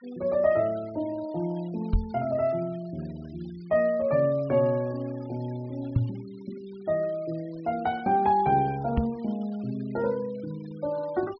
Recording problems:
low-pass filter; nothing above 5.5 kHz
denoising artefacts; signal-to-artefact ratio 24 dB
microphone thump; at 2 s, at 6 s and at 9 s; peak +8 dB vs average level

